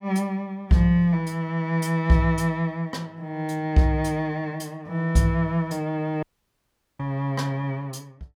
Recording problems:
dropout; at 6 s for 1 s

